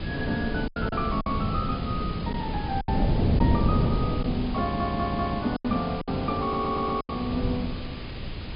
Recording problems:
treble missing; nothing above 5.1 kHz
background hiss; SNR 12 dB
wind on the microphone; below 230 Hz, SNR 1 dB
lost packets; 7% of the sound replaced, filled with silence
stutter; at 4.5 s and at 6.5 s

